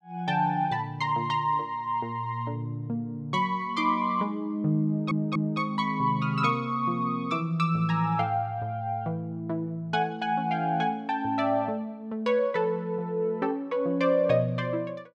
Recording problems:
stutter; at 5 s

